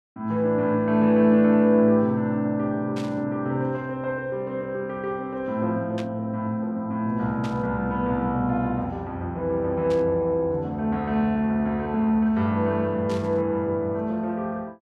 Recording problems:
static burst; 5 times, first at 3 s; peak -10 dB vs average level

